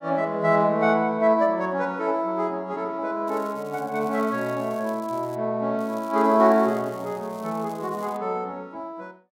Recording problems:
crackling; from 3.5 to 5.5 s and from 6 to 8 s; loose cable, SNR 26 dB

